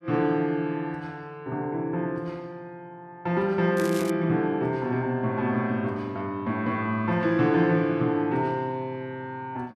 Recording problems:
crackling; at 4 s; loose cable, SNR 15 dB

